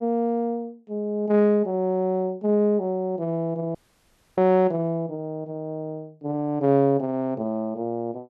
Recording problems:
dropout; at 4 s for 0.5 s

